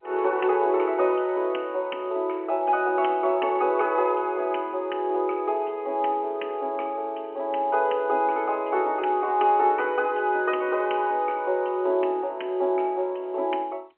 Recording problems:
phone line; 240 Hz to 3.1 kHz, G.711

